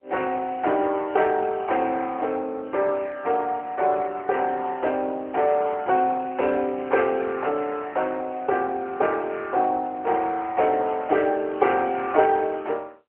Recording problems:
phone line; 300 Hz to 3.2 kHz, AMR-NB

